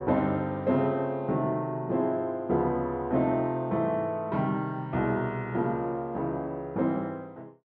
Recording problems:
none

